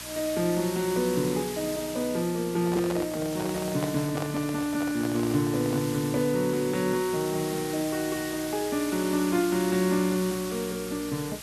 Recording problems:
electrical hum; 60 Hz, harmonics up to 720 Hz, SNR 23 dB
background hiss; slope +1 dB per octave, SNR 10 dB
microphone handling noise; from 2.5 to 6 s; peak -2 dB vs average level

